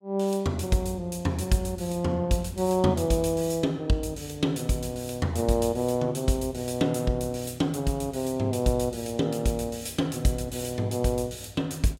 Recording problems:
none

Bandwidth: 16.5 kHz